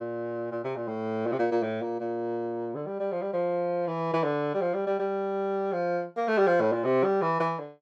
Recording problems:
none

